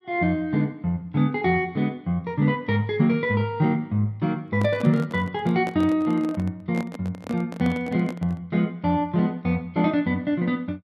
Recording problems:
microphone handling noise; from 4.5 to 8.5 s; peak -6 dB vs average level

